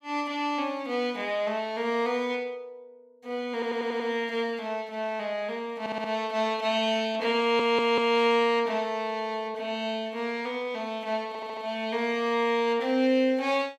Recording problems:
audio stuttering; 4 times, first at 3.5 s

